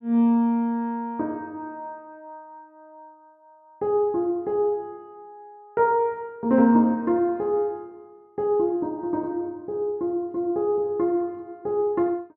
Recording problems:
none

